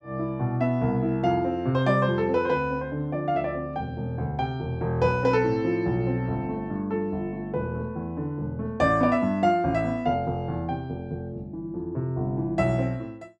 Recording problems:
none

